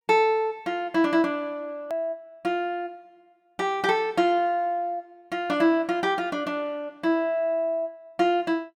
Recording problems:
edit click; at 2 s

